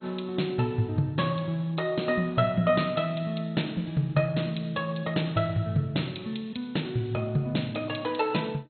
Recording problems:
lossy codec; MP2, log-spectral distance 4 dB, nothing above 4.2 kHz

